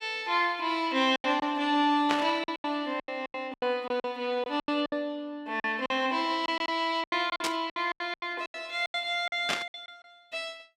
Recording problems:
lost packets; 14% of the sound replaced, filled with silence
burst of static; at 2 s, at 7.5 s and at 9.5 s; peak +4 dB vs average level

